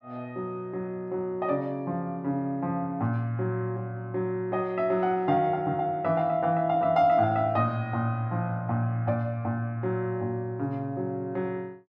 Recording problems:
none

